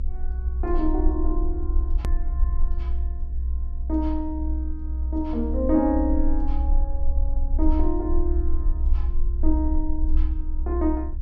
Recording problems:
treble missing; nothing above 7.8 kHz
hum; 50 Hz, harmonics up to 550 Hz, SNR 20 dB
rumble; below 62 Hz, strongest tone 22 Hz, SNR -1 dB
hard cut with a click; at 2 s

